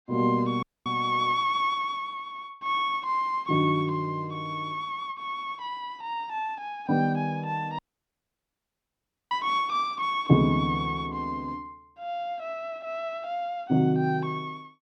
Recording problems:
audio cutting out; at 0.5 s and at 8 s for 1.5 s

